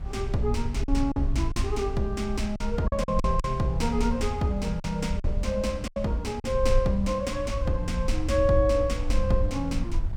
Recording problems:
hum; 60 Hz, harmonics up to 600 Hz, SNR 15 dB
low-frequency rumble; below 62 Hz, SNR 5 dB
wind on the microphone; below 110 Hz, SNR 15 dB
lost packets; 5% of the sound replaced, filled with silence

